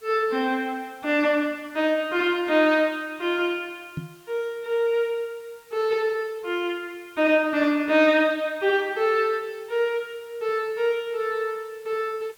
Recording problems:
hiss; slope 0 dB per octave, SNR 29 dB
microphone thump; at 4 s; peak -3 dB vs average level

